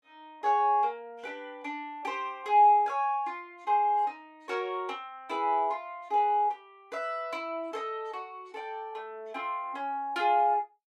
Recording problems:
none

